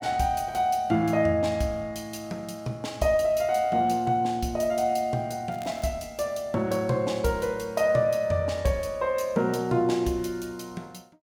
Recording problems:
crackling; at 5.5 s; loose cable, SNR 25 dB

